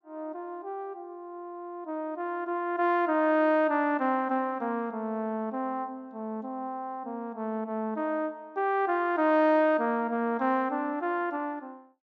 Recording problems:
low-pass filter; nothing above 8 kHz

